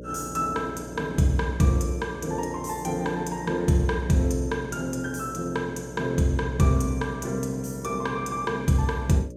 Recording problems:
mains hum; 60 Hz, harmonics up to 600 Hz, SNR 14 dB

